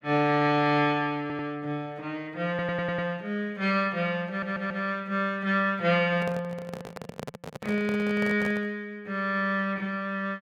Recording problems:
stutter; at 1 s, at 2.5 s and at 4.5 s
microphone handling noise; from 6 to 8.5 s; peak -5 dB vs average level

